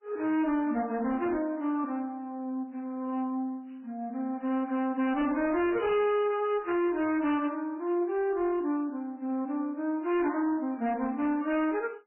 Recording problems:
codec artefacts; MP3, log-spectral distance 2 dB, nothing above 2.5 kHz
distortion; hard clipping, signal-to-distortion ratio 12 dB

